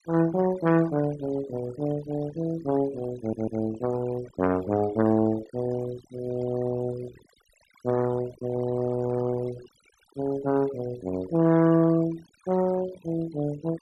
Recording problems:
denoising artefacts; signal-to-artefact ratio 17 dB
audio stuttering; at 3 s

